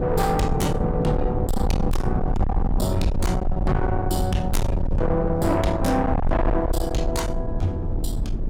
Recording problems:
distortion; soft clipping, signal-to-distortion ratio 6 dB
low-frequency rumble; below 84 Hz, strongest tone 22 Hz, SNR 3 dB
wind noise; below 290 Hz, SNR 5 dB

